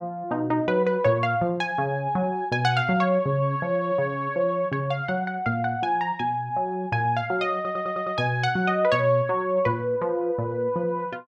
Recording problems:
audio stuttering; at 7.5 s

